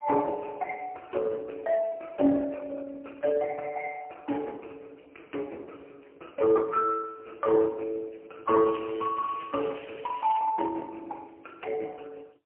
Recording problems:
phone line; 240 Hz to 2.4 kHz, AMR-NB, then MP3
crackling; from 8.5 to 10 s; loose cable, SNR 18 dB

